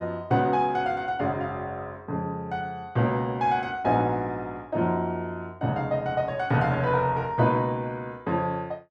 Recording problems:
none

